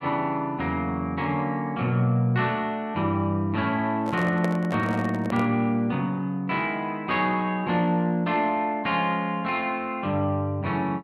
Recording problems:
microphone handling noise; from 4 to 5.5 s; peak -2 dB vs average level

